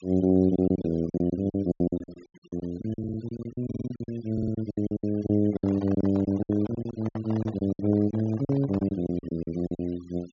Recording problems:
low-pass filter; nothing above 7.1 kHz
denoising artefacts; signal-to-artefact ratio 25 dB
lost packets; 17% of the sound replaced, filled with silence
stutter; at 3 s, at 3.5 s and at 4.5 s
handling noise; from 5.5 to 9 s; peak -9 dB vs average level

